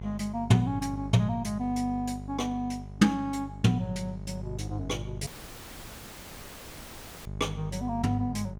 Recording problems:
hum; 50 Hz, harmonics up to 800 Hz, SNR 10 dB
dropout; at 5.5 s for 2 s

